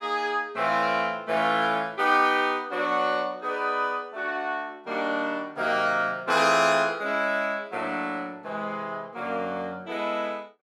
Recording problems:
none

